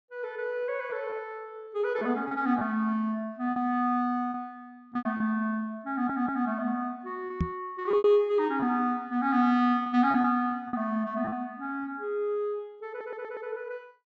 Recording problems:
treble cut off; nothing above 8 kHz
packet loss; 6% of the sound replaced, filled with repeated pitch periods
audio stuttering; at 6 s and at 13 s
microphone bump; at 7.5 s; peak +4 dB vs average level

